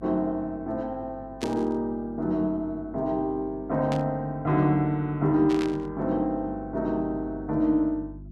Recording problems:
hum; 50 Hz, harmonics up to 350 Hz, SNR 19 dB
burst of static; at 1.5 s, at 4 s and at 5.5 s; peak -6 dB vs average level

